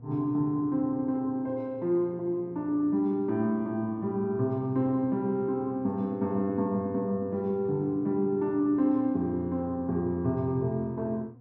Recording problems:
electrical hum; 60 Hz, harmonics up to 720 Hz, SNR 22 dB

